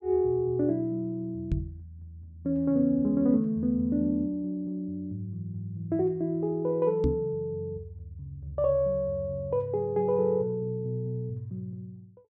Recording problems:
microphone thump; at 1.5 s and at 7 s; peak +4 dB vs average level

